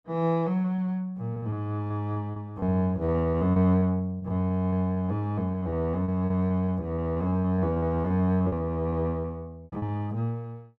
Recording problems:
packet loss; 10% of the sound replaced, filled with repeated pitch periods

